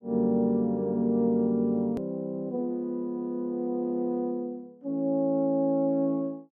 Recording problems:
edit click; at 2 s

